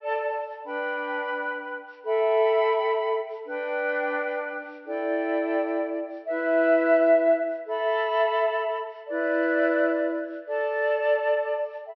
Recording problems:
low-pass filter; nothing above 5.8 kHz

